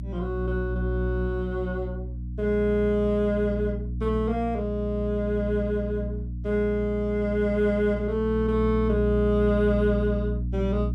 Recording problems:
hum; 60 Hz, harmonics up to 300 Hz, SNR 5 dB

